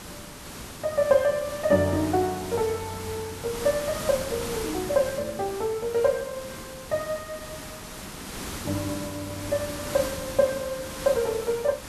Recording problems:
background hiss; slope -3 dB per octave, SNR 9 dB

